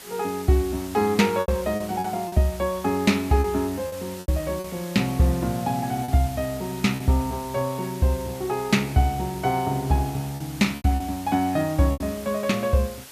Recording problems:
hiss; slope 0 dB per octave, SNR 16 dB
lost packets; 6% of the sound replaced, filled with repeated pitch periods

